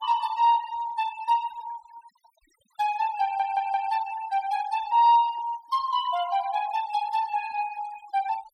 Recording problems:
noise reduction artefacts; signal-to-artefact ratio 19 dB
stutter; at 3 s

